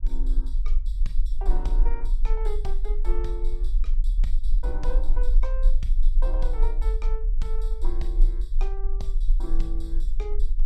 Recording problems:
low-frequency rumble; below 34 Hz, strongest tone 22 Hz, SNR -12 dB

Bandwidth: 14.5 kHz